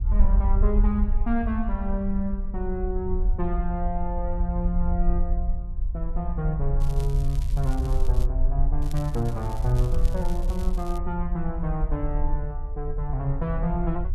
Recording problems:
low-frequency rumble; below 52 Hz, SNR -2 dB
crackle; from 7 to 8.5 s and from 9 to 11 s; loose cable, SNR 18 dB

